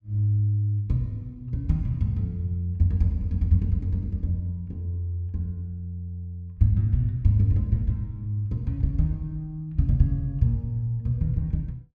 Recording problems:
none

